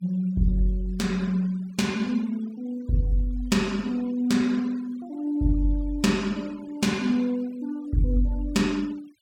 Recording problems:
noise reduction artefacts; signal-to-artefact ratio 24 dB

